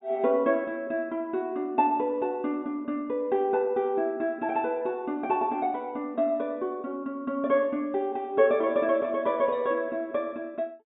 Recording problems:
treble missing; nothing above 4 kHz

